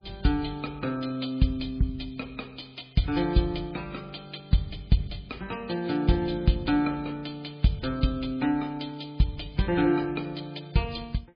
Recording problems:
lossy codec; MP3, log-spectral distance 5 dB, nothing above 4.6 kHz

